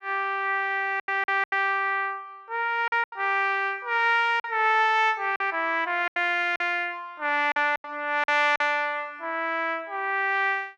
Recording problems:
packet loss; 7% of the sound replaced, filled with silence

